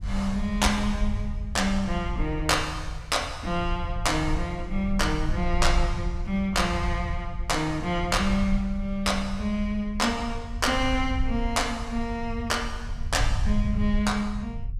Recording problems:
low-frequency rumble; below 70 Hz, SNR 6 dB

